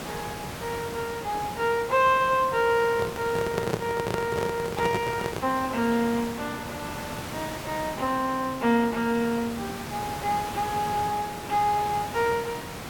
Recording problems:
hiss; slope -4 dB per octave, SNR 9 dB
handling noise; from 3 to 5.5 s; peak +3 dB vs average level

